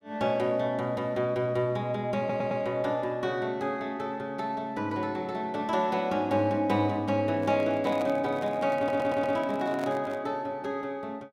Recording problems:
stutter; at 2 s and at 9 s
microphone handling noise; from 7.5 to 10 s; peak -5 dB vs average level

